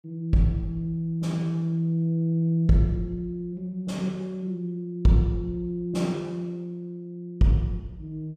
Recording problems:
none

